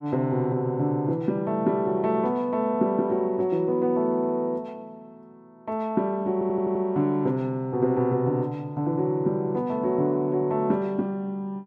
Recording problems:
audio stuttering; at 6.5 s

